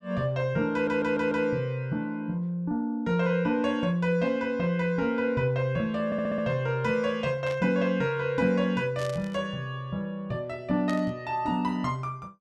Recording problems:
stutter; at 0.5 s and at 6 s
burst of static; at 7.5 s, at 9 s and at 11 s; peak -10 dB vs average level

